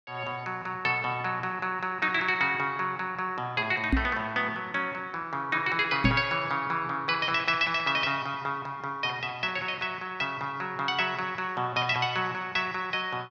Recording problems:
knock on the microphone; at 4 s and at 6 s; peak +7 dB vs average level

